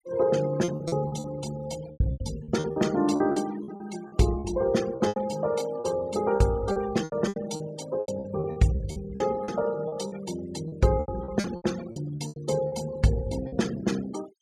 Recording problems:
noise reduction artefacts; signal-to-artefact ratio 17 dB
lost packets; 15% of the sound replaced, filled with repeated pitch periods

